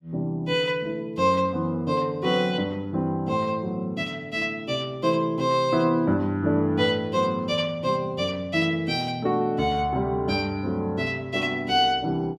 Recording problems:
none

